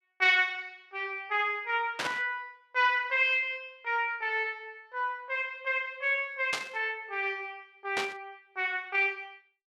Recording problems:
burst of static; at 2 s, at 6.5 s and at 8 s; peak +1 dB vs average level

